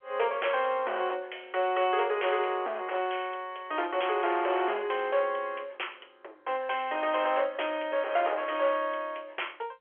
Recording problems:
phone line; 340 Hz to 3.3 kHz, G.711
distorted audio; hard clipping, uneven, signal-to-distortion ratio 11 dB

